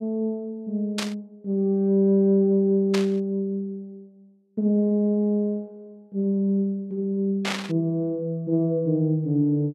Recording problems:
static burst; at 1 s, at 3 s and at 7.5 s; peak 0 dB vs average level

